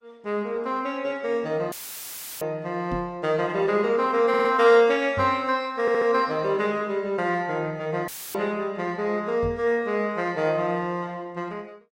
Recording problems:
lossy codec; Opus, log-spectral distance 2 dB
dropout; at 1.5 s for 0.5 s and at 8 s; filled with static
knock on the microphone; at 3 s, at 5 s and at 9.5 s; peak -5 dB vs average level
audio stuttering; at 4.5 s and at 6 s

